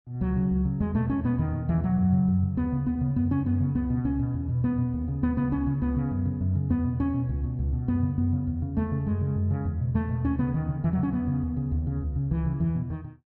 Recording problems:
none

